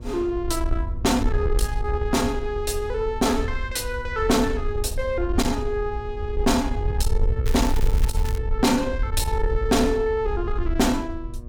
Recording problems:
distorted audio; soft clipping, signal-to-distortion ratio 11 dB
mains hum; 60 Hz, harmonics up to 1.2 kHz, SNR 20 dB
wind noise; below 68 Hz, SNR 4 dB
crackle; at 7.5 s; loose cable, SNR 15 dB

